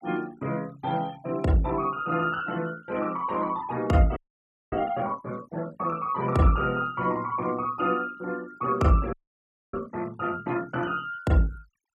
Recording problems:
noise reduction artefacts; signal-to-artefact ratio 24 dB
audio freezing; at 4 s for 0.5 s and at 9 s for 0.5 s

